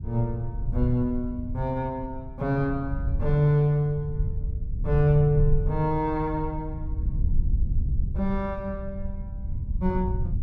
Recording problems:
rumble; below 80 Hz, SNR 5 dB

